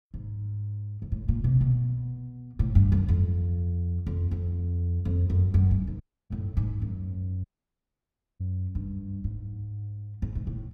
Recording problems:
audio cutting out; at 6 s and at 7.5 s for 1 s

